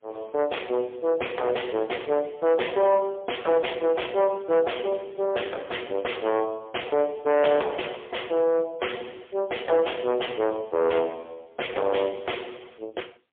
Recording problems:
phone line; 340 Hz to 3.4 kHz, AMR-NB, then MP3
distorted audio; soft clipping, signal-to-distortion ratio 8 dB

